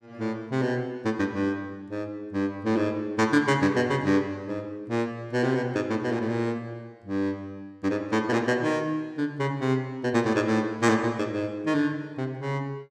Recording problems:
none

